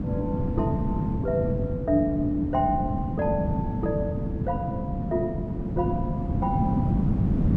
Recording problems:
wind on the microphone; below 240 Hz, SNR -1 dB

